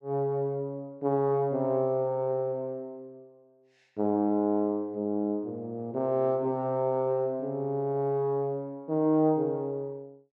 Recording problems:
none

